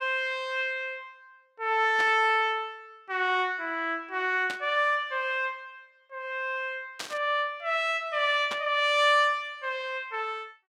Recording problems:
burst of static; 4 times, first at 2 s; peak -4 dB vs average level

